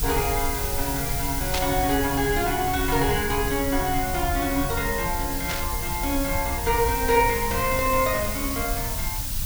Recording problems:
background hiss; slope +2 dB per octave, SNR 4 dB
low-frequency rumble; below 86 Hz, SNR 8 dB
static burst; at 1.5 s and at 5.5 s; peak +2 dB vs average level

